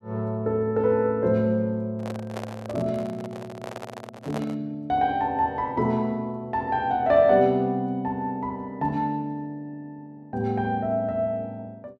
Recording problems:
microphone handling noise; from 2 to 4.5 s; peak -4 dB vs average level

